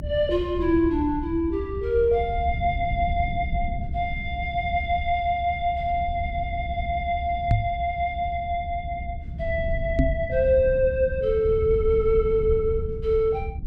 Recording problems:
rumble; below 92 Hz, SNR 8 dB
microphone thump; at 7.5 s and at 10 s; peak +6 dB vs average level

